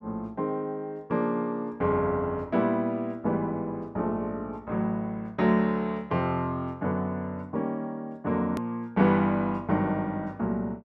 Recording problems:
edit click; at 8.5 s

